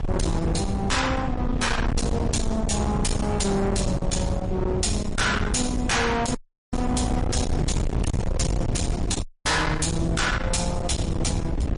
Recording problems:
lossy codec; MP3, log-spectral distance 3 dB, nothing above 10.4 kHz
distortion; soft clipping, signal-to-distortion ratio 6 dB
mains hum; 60 Hz, harmonics up to 360 Hz, SNR 15 dB
wind on the microphone; below 260 Hz, SNR 2 dB
dropout; at 6.5 s and at 9 s

